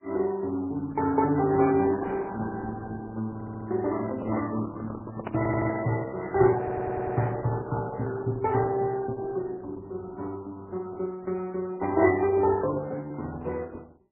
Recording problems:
lossy compression; Opus, then MP3, log-spectral distance 3 dB
stutter; at 3.5 s, at 5.5 s and at 6.5 s
handling noise; from 3.5 to 6 s; peak 0 dB vs average level

